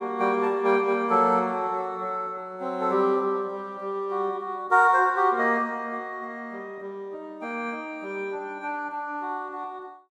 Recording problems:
none

